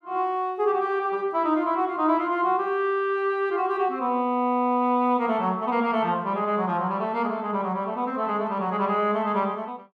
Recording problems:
none

